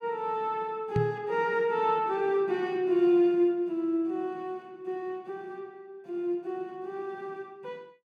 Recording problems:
microphone thump; at 1 s; peak +3 dB vs average level

